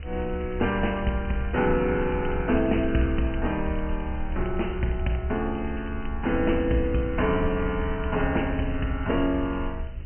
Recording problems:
treble missing; nothing above 3.1 kHz
electrical hum; 60 Hz, harmonics up to 660 Hz, SNR 19 dB
background hiss; SNR 27 dB
rumble; below 72 Hz, SNR 8 dB
crackling; vinyl, SNR 27 dB

